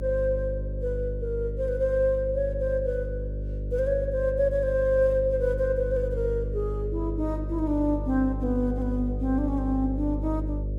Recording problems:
hum; 50 Hz, harmonics up to 600 Hz, SNR 5 dB

